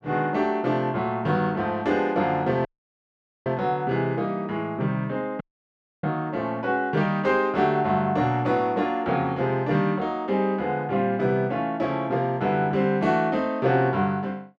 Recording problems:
audio cutting out; at 2.5 s for 1 s and at 5.5 s for 0.5 s

